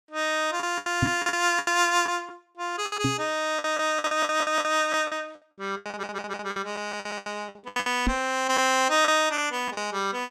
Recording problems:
lost packets; 14% of the sound replaced, filled with the last packet
knock on the microphone; at 1 s, at 3 s and at 8 s; peak +4 dB vs average level
audio stuttering; at 4 s and at 6 s

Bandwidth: 15.5 kHz